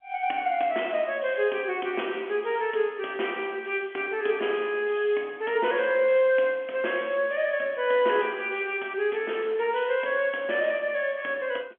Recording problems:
phone line; 260 Hz to 3.3 kHz, G.711

